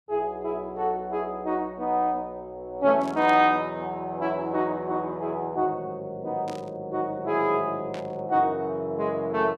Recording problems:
static burst; at 3 s, at 6.5 s and at 8 s; peak -11 dB vs average level

